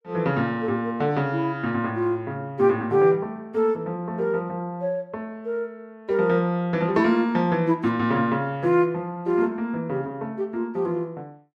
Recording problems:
none

